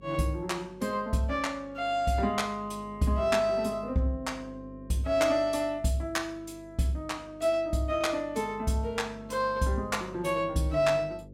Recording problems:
electrical hum; 50 Hz, harmonics up to 550 Hz, SNR 20 dB

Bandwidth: 16.5 kHz